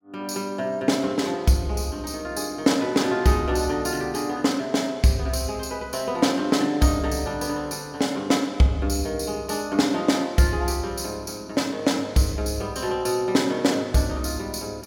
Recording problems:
none

